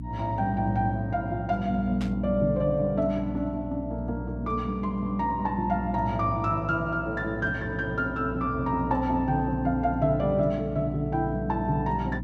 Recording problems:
hum; 60 Hz, harmonics up to 300 Hz, SNR 9 dB
burst of static; at 2 s; peak -9 dB vs average level

